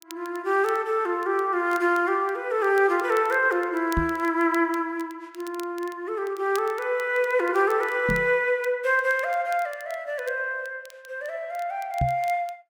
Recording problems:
crackling; vinyl, SNR 24 dB
microphone thump; at 4 s, at 8 s and at 12 s; peak +2 dB vs average level

